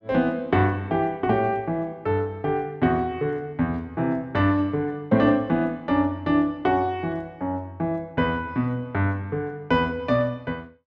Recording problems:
none

